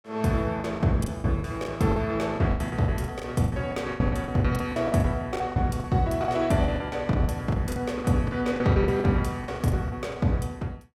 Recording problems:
lost packets; 18% of the sound replaced, filled with the last packet

